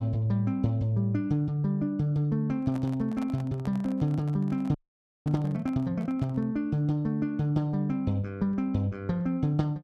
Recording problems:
microphone handling noise; from 2.5 to 6.5 s; peak -10 dB vs average level
frozen audio; at 4.5 s for 0.5 s

